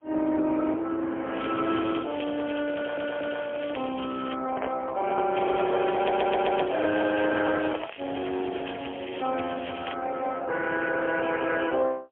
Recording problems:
phone line; 260 Hz to 3.3 kHz, AMR-NB, then MP3
crackle; from 1.5 to 4.5 s and from 5.5 to 10 s; loose cable, SNR 14 dB
stutter; at 3 s and at 6 s
microphone handling noise; from 4.5 to 8 s; peak +1 dB vs average level

